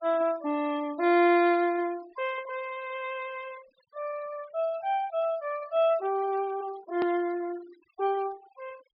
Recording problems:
low-pass filter; nothing above 5.5 kHz
denoising artefacts; signal-to-artefact ratio 21 dB
edit click; at 7 s

